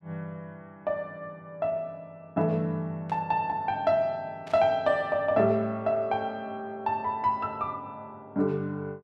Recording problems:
burst of static; at 3 s and at 4.5 s; peak -15 dB vs average level

